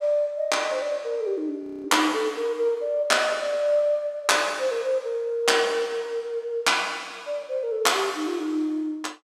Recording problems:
frozen audio; at 1.5 s

